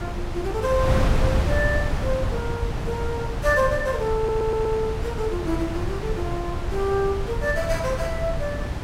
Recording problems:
wind on the microphone; below 220 Hz, SNR 2 dB
stutter; at 4 s

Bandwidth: 16 kHz